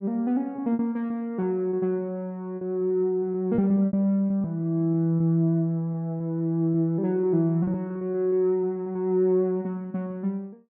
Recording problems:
packet loss; 9% of the sound replaced, filled with repeated pitch periods

